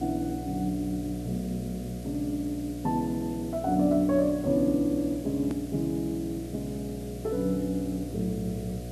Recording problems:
hum; 60 Hz, harmonics up to 720 Hz, SNR 10 dB
background hiss; slope +2 dB per octave, SNR 20 dB
click at an edit; at 5.5 s

